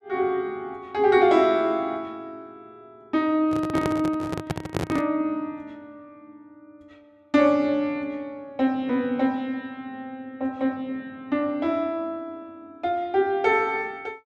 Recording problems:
microphone handling noise; from 3.5 to 5 s; peak +2 dB vs average level

